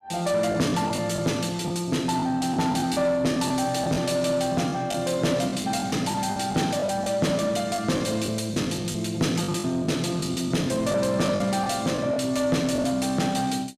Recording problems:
distorted audio; soft clipping, signal-to-distortion ratio 10 dB
lost packets; 8% of the sound replaced, filled with the last packet

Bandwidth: 15 kHz